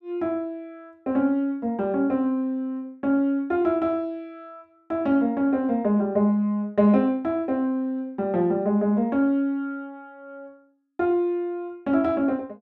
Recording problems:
none

